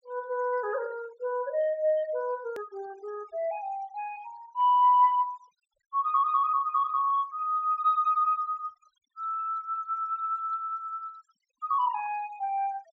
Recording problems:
treble missing; nothing above 8 kHz
noise reduction artefacts; signal-to-artefact ratio 27 dB
edit click; at 2.5 s

